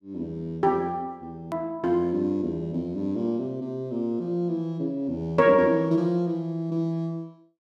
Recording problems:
hard cut with a click; at 1.5 s

